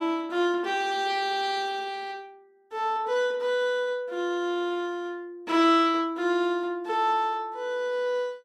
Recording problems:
none

